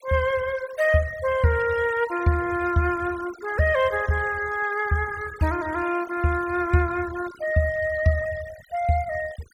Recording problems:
noise reduction artefacts; signal-to-artefact ratio 18 dB

